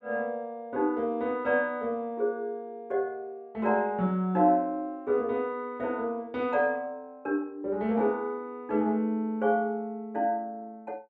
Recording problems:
none

